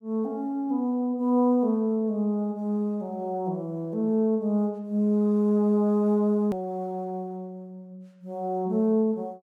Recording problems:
hard cut with a click; at 6.5 s

